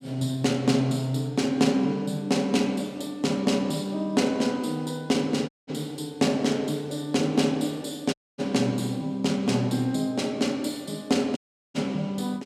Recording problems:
dropout; at 5.5 s, at 8 s and at 11 s

